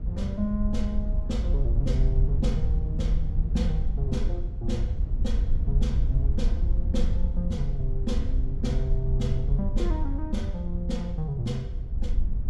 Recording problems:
rumble; below 72 Hz, SNR 11 dB
wind noise; below 64 Hz, SNR -4 dB

